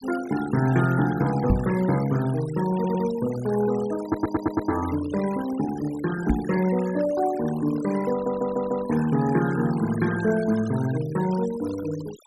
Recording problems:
denoising artefacts; signal-to-artefact ratio 16 dB
microphone thump; at 1.5 s and at 6.5 s; peak +5 dB vs average level
stutter; at 2.5 s, at 4 s and at 8 s

